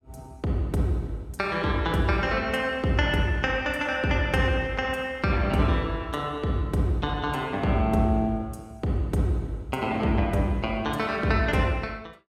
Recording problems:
none

